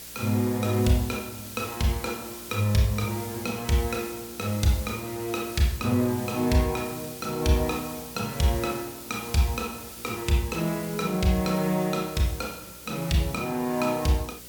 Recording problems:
electrical hum; 60 Hz, harmonics up to 540 Hz, SNR 26 dB
hiss; slope +1 dB per octave, SNR 12 dB

